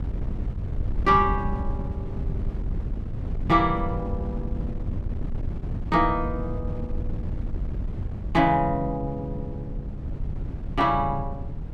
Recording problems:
wind noise; below 120 Hz, SNR 7 dB

